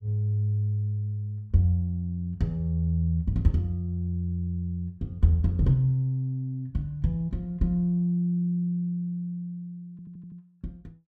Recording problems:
audio stuttering; at 10 s

